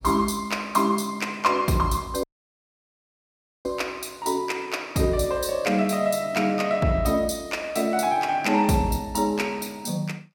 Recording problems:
dropout; at 2 s for 1.5 s

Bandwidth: 17 kHz